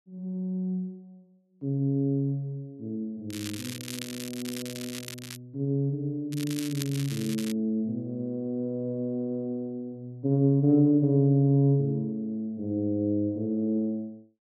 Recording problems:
crackling; from 3.5 to 5.5 s and from 6.5 to 7.5 s; loose cable, SNR 11 dB

